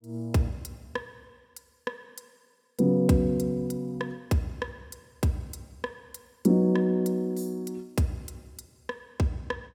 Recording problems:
none

